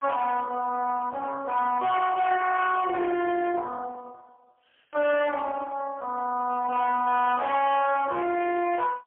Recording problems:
telephone audio; 300 Hz to 3.4 kHz, AMR-NB, then MP3
distortion; hard clipping, signal-to-distortion ratio 10 dB

